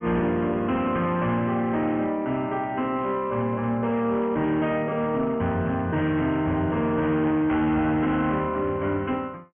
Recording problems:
treble missing; nothing above 3.3 kHz
distorted audio; hard clipping, signal-to-distortion ratio 11 dB

